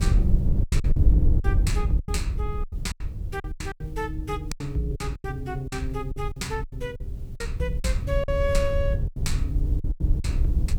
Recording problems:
hiss; slope -1 dB per octave, SNR 30 dB
wind noise; below 82 Hz, SNR -3 dB
lost packets; 13% of the sound replaced, filled with silence

